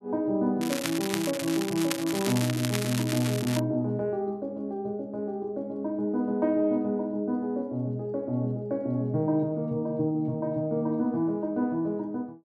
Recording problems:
crackling; from 0.5 to 3.5 s; loose cable, SNR 6 dB

